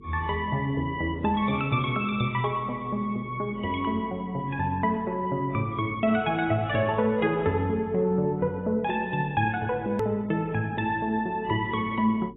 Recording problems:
lossy codec; AAC, log-spectral distance 2 dB, nothing above 3.6 kHz
electrical hum; 50 Hz, harmonics up to 450 Hz, SNR 22 dB
hard cut with a click; at 10 s

